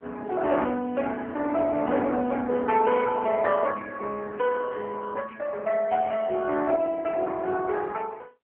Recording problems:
telephone audio; 280 Hz to 3 kHz, AMR-NB

